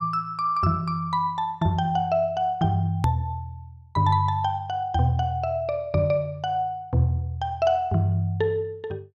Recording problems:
hard cut with a click; at 3 s

